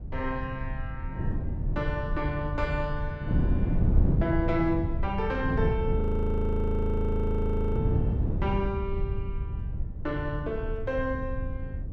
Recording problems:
low-frequency rumble; below 78 Hz, SNR 4 dB
wind on the microphone; below 180 Hz, SNR -2 dB
audio freezing; at 6 s for 2 s

